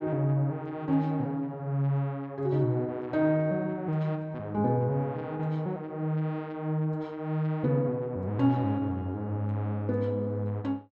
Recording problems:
low-pass filter; nothing above 8 kHz

